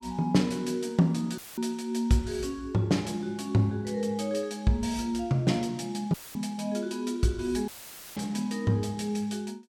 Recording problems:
dropout; at 1.5 s, at 6 s and at 7.5 s; filled with static

